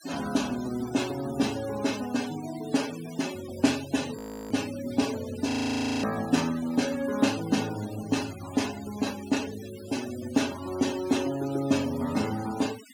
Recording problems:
denoising artefacts; signal-to-artefact ratio 13 dB
frozen audio; at 4 s and at 5.5 s for 0.5 s

